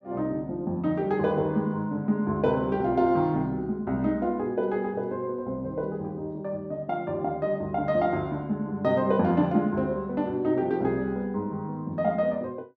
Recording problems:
none

